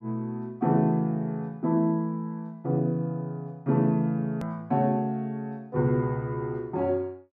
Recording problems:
hard cut with a click; at 4.5 s

